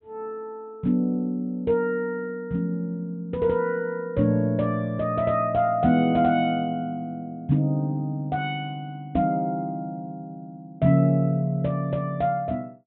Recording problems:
treble cut off; nothing above 4 kHz

